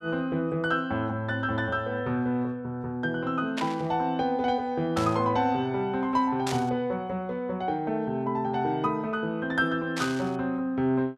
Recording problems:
static burst; 4 times, first at 3.5 s; peak -1 dB vs average level

